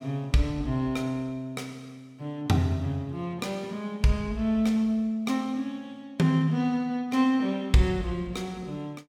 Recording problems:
none

